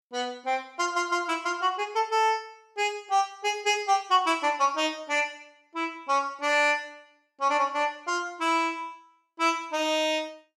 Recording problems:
none

